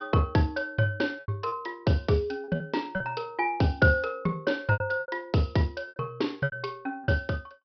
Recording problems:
treble cut off; nothing above 5.5 kHz
lost packets; 8% of the sound replaced, filled with repeated pitch periods

